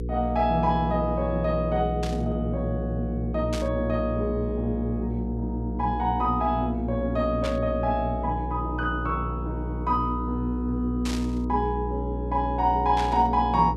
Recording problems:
electrical hum; 60 Hz, harmonics up to 480 Hz, SNR 5 dB
burst of static; 5 times, first at 2 s; peak -4 dB vs average level

